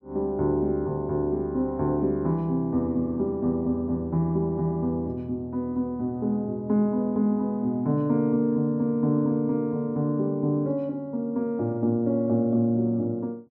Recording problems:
none

